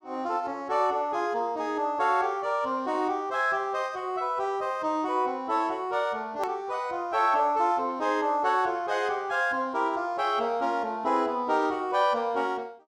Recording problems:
click at an edit; at 6.5 s

